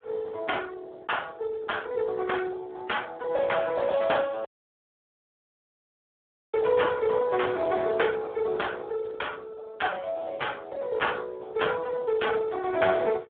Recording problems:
telephone audio; 170 Hz to 3.5 kHz, Speex
audio cutting out; at 4.5 s for 2 s

